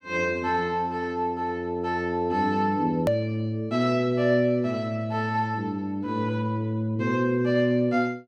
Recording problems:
hard cut with a click; at 3 s

